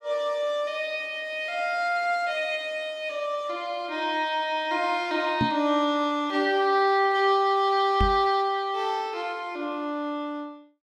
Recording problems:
microphone thump; at 5.5 s and at 8 s; peak +4 dB vs average level

